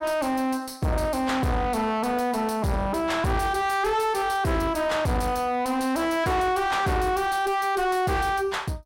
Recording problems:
distorted audio; soft clipping, signal-to-distortion ratio 6 dB

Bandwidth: 16 kHz